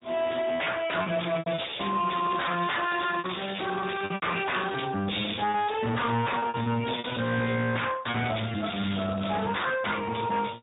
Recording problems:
treble cut off; nothing above 3.8 kHz
lossy codec; Speex, log-spectral distance 11 dB
distorted audio; hard clipping, uneven, signal-to-distortion ratio 6 dB
packet loss; 9% of the sound replaced, filled with repeated pitch periods
crackle; from 2 to 4 s, at 4 s and from 8 to 9.5 s; loose cable, SNR 13 dB

